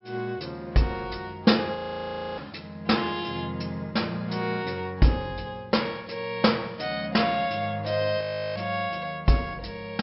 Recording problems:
low-pass filter; nothing above 5.4 kHz
frozen audio; at 2 s for 0.5 s and at 8 s

